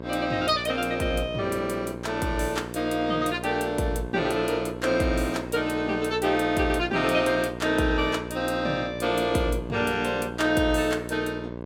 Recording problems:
hum; 60 Hz, harmonics up to 1.7 kHz, SNR 11 dB

